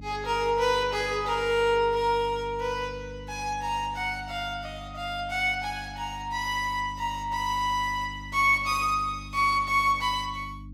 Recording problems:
hum; 50 Hz, harmonics up to 300 Hz, SNR 16 dB

